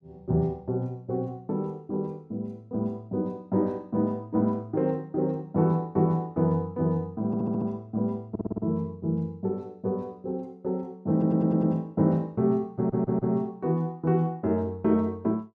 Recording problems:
stutter; 4 times, first at 7.5 s

